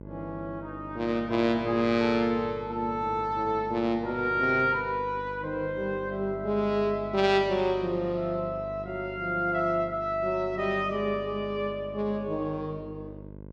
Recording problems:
hum; 50 Hz, harmonics up to 1.1 kHz, SNR 16 dB

